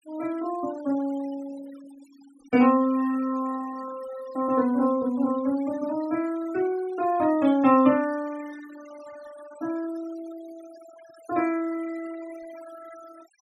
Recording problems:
denoising artefacts; signal-to-artefact ratio 21 dB

